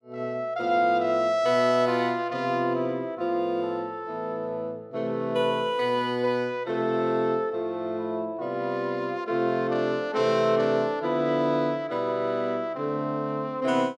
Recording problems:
none

